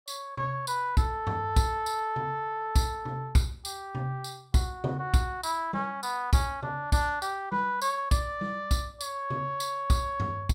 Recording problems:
none

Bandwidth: 16.5 kHz